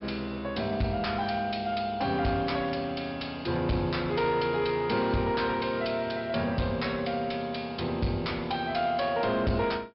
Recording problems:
treble cut off; nothing above 5.3 kHz
distortion; soft clipping, signal-to-distortion ratio 9 dB

